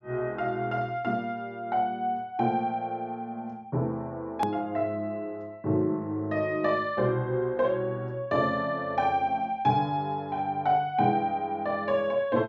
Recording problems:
treble missing; nothing above 8 kHz
click at an edit; at 4.5 s

